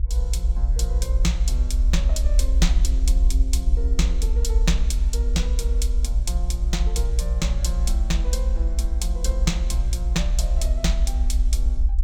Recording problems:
low-frequency rumble; below 58 Hz, strongest tone 38 Hz, SNR -7 dB

